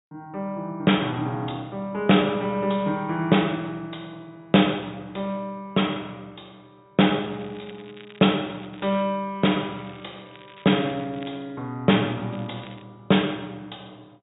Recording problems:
low-pass filter; nothing above 4 kHz
crackling; from 7 to 9 s, from 9.5 to 11 s and at 12 s; loose cable, SNR 25 dB

